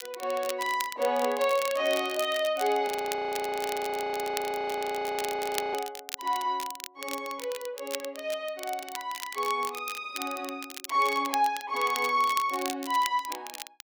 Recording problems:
crackle; vinyl, SNR 10 dB
audio freezing; at 3 s for 3 s

